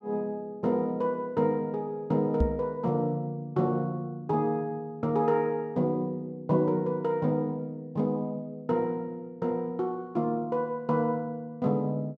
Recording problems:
microphone bump; at 2.5 s; peak +6 dB vs average level

